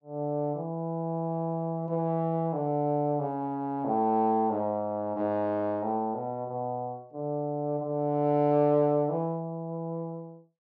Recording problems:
low-pass filter; nothing above 7.2 kHz

